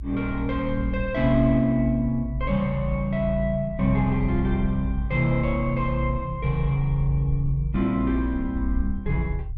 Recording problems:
low-frequency rumble; below 58 Hz, strongest tone 56 Hz, SNR 7 dB

